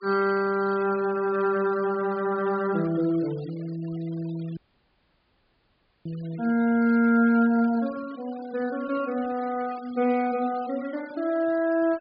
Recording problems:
treble missing; nothing above 5 kHz
denoising artefacts; signal-to-artefact ratio 23 dB
dropout; at 4.5 s for 1.5 s

